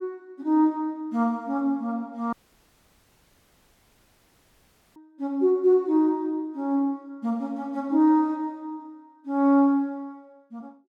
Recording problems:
dropout; at 2.5 s for 2.5 s

